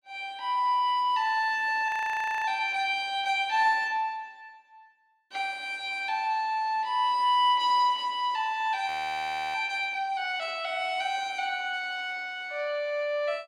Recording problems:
frozen audio; at 2 s for 0.5 s and at 9 s for 0.5 s

